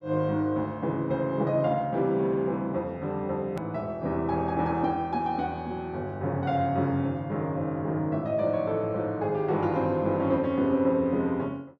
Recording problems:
hard cut with a click; at 3.5 s

